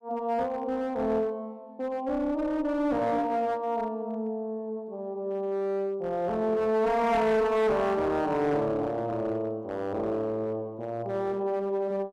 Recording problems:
distorted audio; hard clipping, uneven, signal-to-distortion ratio 9 dB

